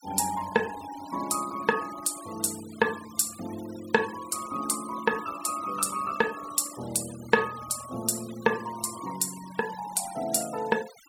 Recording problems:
noise reduction artefacts; signal-to-artefact ratio 16 dB

